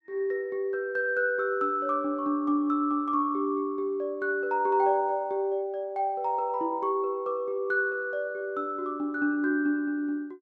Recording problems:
none

